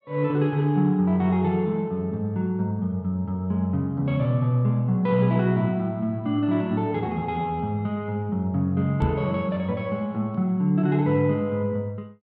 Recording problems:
microphone bump; at 9 s; peak +1 dB vs average level

